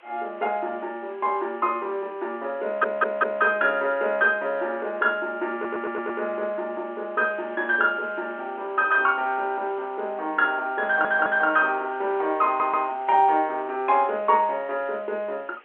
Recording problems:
telephone audio; 320 Hz to 3.3 kHz, G.711
hiss; SNR 27 dB
stutter; 4 times, first at 2.5 s

